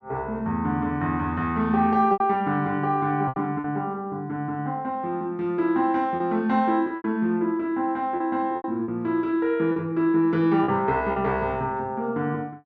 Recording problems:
packet loss; 5% of the sound replaced, filled with repeated pitch periods

